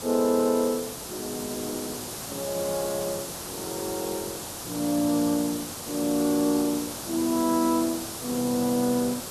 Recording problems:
hiss; SNR 7 dB
crackle; from 5 to 7.5 s; loose cable, SNR 27 dB

